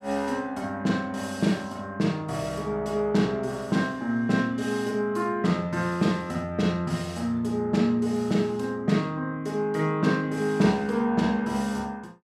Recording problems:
none

